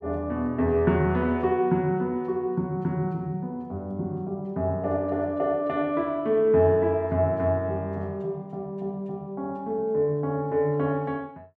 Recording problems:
none

